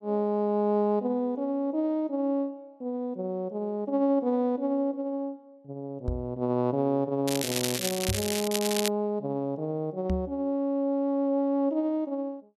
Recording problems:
microphone bump; at 6 s, at 8 s and at 10 s; peak +2 dB vs average level
crackling; from 7.5 to 9 s; loose cable, SNR 2 dB

